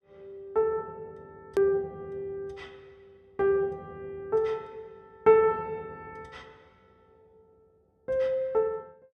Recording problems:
edit click; at 1.5 s

